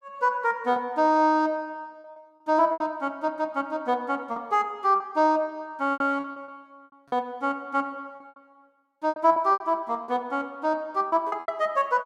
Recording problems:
packet loss; 9% of the sound replaced, filled with repeated pitch periods

